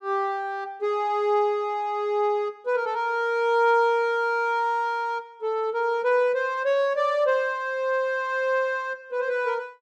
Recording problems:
none

